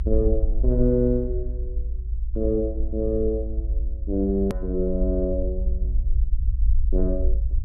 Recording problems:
rumble; below 56 Hz, SNR 1 dB
hard cut with a click; at 4.5 s

